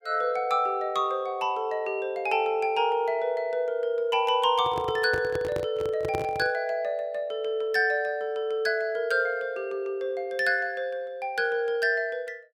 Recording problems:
handling noise; from 4.5 to 6.5 s; peak -2 dB vs average level

